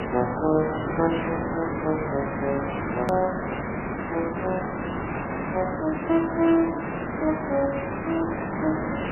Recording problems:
lossy compression; MP3, log-spectral distance 17 dB, nothing above 13.1 kHz
background hiss; SNR 2 dB
edit click; at 3 s

